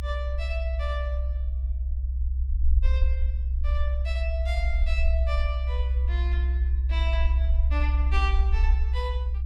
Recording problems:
low-frequency rumble; below 66 Hz, strongest tone 64 Hz, SNR -10 dB

